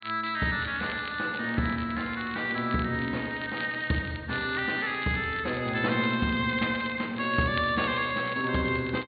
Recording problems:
treble missing; nothing above 4.5 kHz
crackle; vinyl, SNR 18 dB

